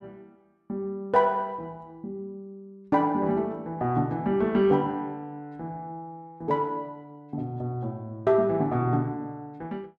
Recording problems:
none

